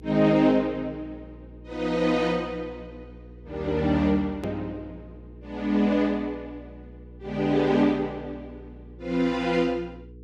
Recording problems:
hum; 60 Hz, harmonics up to 480 Hz, SNR 21 dB
hard cut with a click; at 4.5 s

